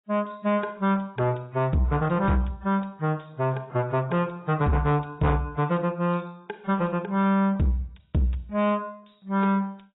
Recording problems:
codec artefacts; AAC, log-spectral distance 4 dB, nothing above 3.8 kHz
distortion; soft clipping, signal-to-distortion ratio 12 dB

